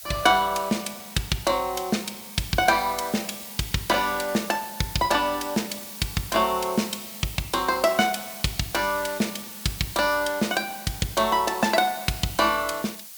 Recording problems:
background hiss; slope +4 dB per octave, SNR 12 dB

